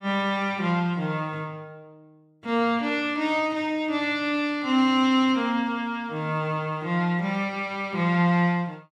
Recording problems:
none

